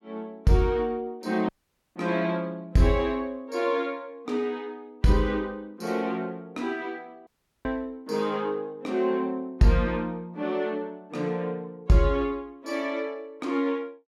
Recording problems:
dropout; at 1.5 s and at 7.5 s

